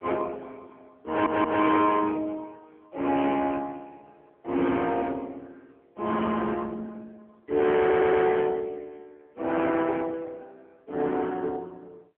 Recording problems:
phone line; 240 Hz to 3.3 kHz, AMR-NB
distortion; hard clipping, signal-to-distortion ratio 13 dB
stutter; at 1 s and at 8 s

